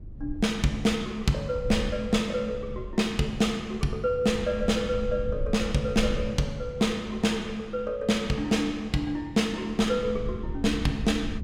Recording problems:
rumble; below 90 Hz, SNR 12 dB

